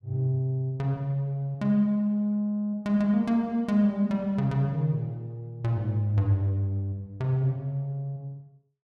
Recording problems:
none

